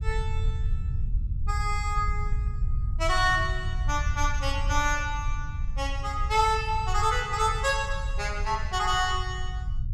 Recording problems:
low-frequency rumble; below 78 Hz, SNR 4 dB

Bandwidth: 16 kHz